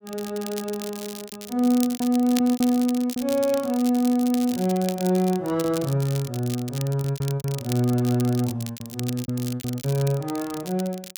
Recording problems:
crackle; vinyl, SNR 13 dB
lost packets; 8% of the sound replaced, filled with repeated pitch periods

